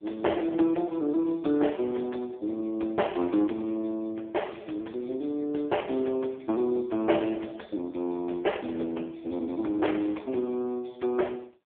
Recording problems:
telephone audio; 260 Hz to 3.5 kHz, AMR-NB

